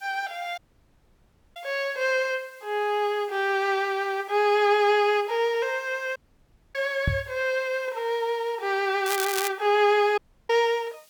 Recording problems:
background hiss; SNR 30 dB
dropout; at 0.5 s for 1 s, at 6 s for 0.5 s and at 10 s
microphone bump; at 7 s; peak +3 dB vs average level
crackling; at 9 s; loose cable, SNR 6 dB

